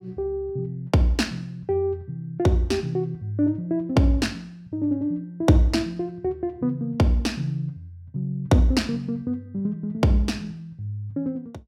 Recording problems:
none

